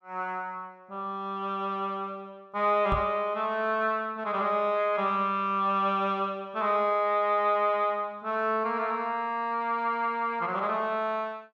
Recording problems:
microphone thump; at 3 s; peak 0 dB vs average level

